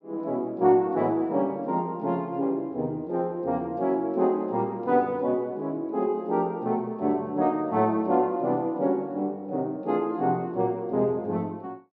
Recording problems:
none

